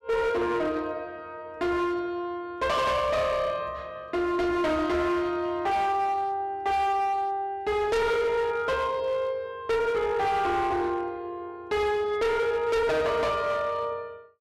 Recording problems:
distortion; hard clipping, signal-to-distortion ratio 6 dB

